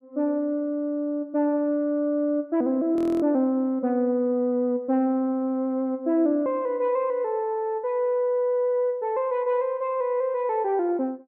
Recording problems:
audio freezing; at 3 s

